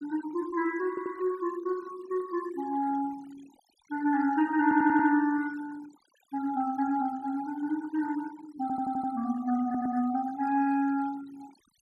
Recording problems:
denoising artefacts; signal-to-artefact ratio 20 dB
stutter; 4 times, first at 1 s

